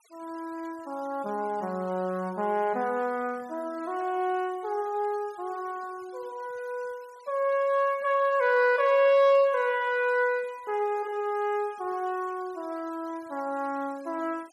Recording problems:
denoising artefacts; signal-to-artefact ratio 27 dB

